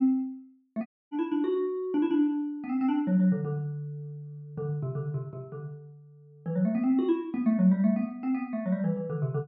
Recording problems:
audio cutting out; at 1 s

